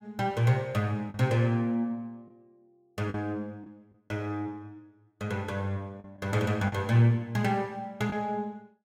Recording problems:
packet loss; 3% of the sound replaced, filled with the last packet

